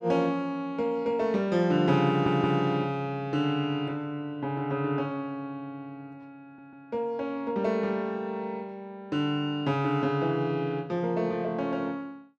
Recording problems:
stutter; at 2 s and at 6.5 s

